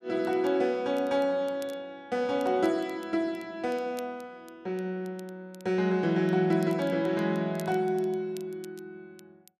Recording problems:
crackle; vinyl, SNR 27 dB

